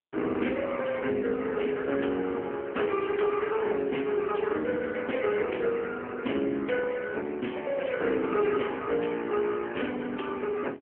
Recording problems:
phone line; 220 Hz to 3.2 kHz, AMR-NB

